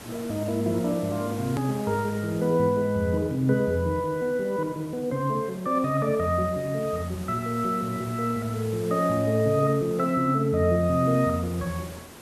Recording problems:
background hiss; slope -4 dB per octave, SNR 18 dB
click at an edit; at 1.5 s

